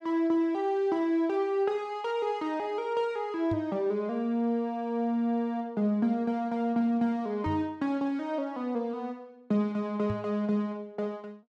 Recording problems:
microphone bump; at 3.5 s, at 7.5 s and at 10 s; peak -2 dB vs average level

